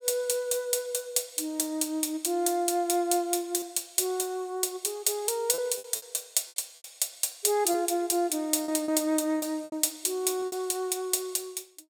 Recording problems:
packet loss; 5% of the sound replaced, filled with repeated pitch periods

